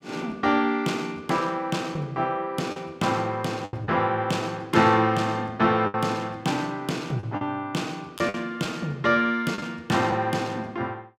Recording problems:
packet loss; 4% of the sound replaced, filled with the last packet

